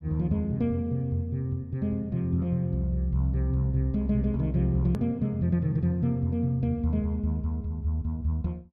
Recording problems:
edit click; at 5 s

